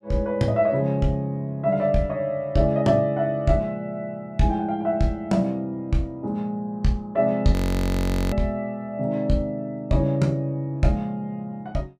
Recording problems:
frozen audio; at 7.5 s for 1 s

